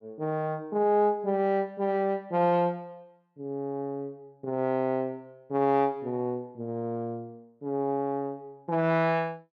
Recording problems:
none

